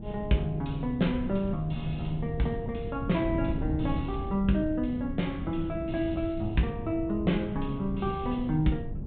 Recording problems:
treble cut off; nothing above 4 kHz
wind noise; below 180 Hz, SNR 7 dB

